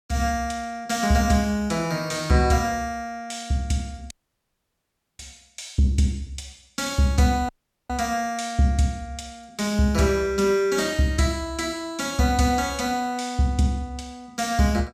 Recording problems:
dropout; at 4 s for 1 s and at 7.5 s

